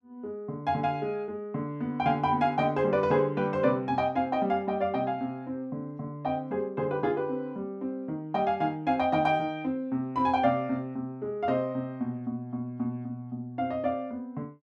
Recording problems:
none

